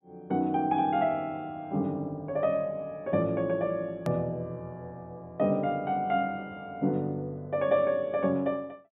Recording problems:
low-pass filter; nothing above 4 kHz
click at an edit; at 4 s

